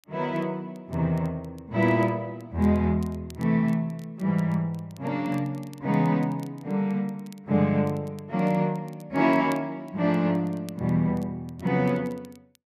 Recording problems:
crackle; vinyl, SNR 30 dB

